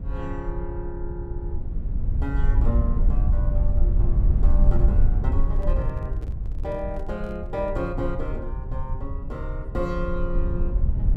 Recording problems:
hum; 60 Hz, harmonics up to 720 Hz, SNR 20 dB
rumble; below 64 Hz, SNR -6 dB
microphone handling noise; from 5.5 to 8 s; peak -8 dB vs average level

